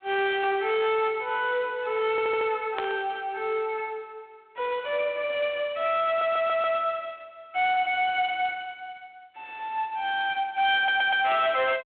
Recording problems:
phone line; 320 Hz to 3.9 kHz, G.726
distortion; hard clipping, signal-to-distortion ratio 10 dB
audio stuttering; at 2 s, at 6 s and at 11 s
static burst; at 3 s; peak -1 dB vs average level

